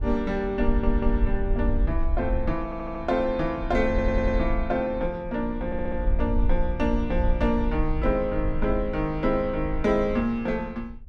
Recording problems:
wind noise; below 58 Hz, SNR 4 dB
stutter; 4 times, first at 0.5 s

